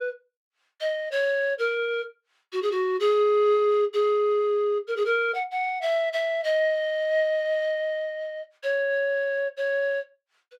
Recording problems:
none

